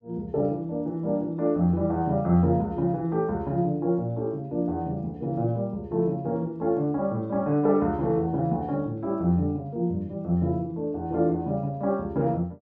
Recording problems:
none

